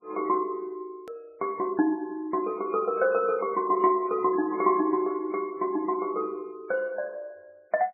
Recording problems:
codec artefacts; MP3, log-spectral distance 2 dB
hard cut with a click; at 1 s

